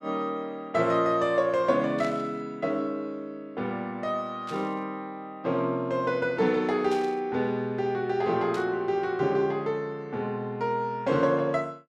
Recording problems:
static burst; 4 times, first at 2 s; peak -9 dB vs average level

